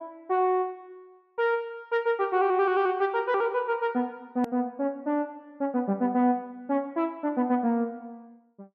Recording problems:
edit click; at 4.5 s

